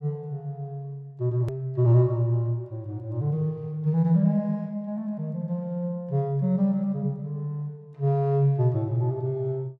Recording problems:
click at an edit; at 1.5 s

